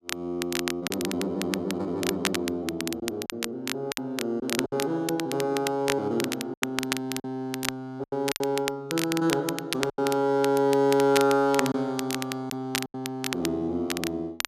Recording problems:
crackling; vinyl, SNR 6 dB
packet loss; 5% of the sound replaced, filled with silence

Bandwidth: 14 kHz